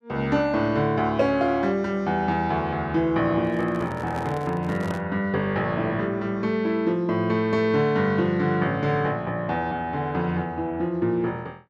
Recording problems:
microphone handling noise; from 3.5 to 5 s; peak -7 dB vs average level

